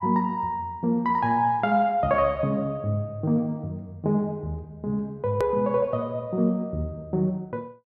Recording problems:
click at an edit; at 5.5 s

